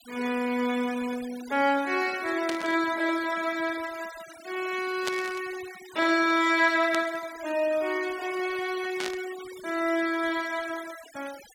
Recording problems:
denoising artefacts; signal-to-artefact ratio 17 dB
burst of static; 4 times, first at 2.5 s; peak 0 dB vs average level

